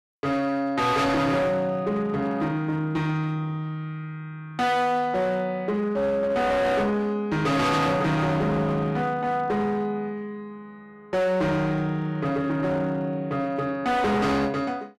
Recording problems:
distortion; hard clipping, signal-to-distortion ratio 7 dB

